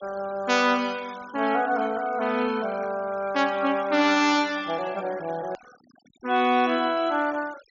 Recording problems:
treble cut off; nothing above 7.1 kHz
noise reduction artefacts; signal-to-artefact ratio 21 dB
click at an edit; at 5.5 s

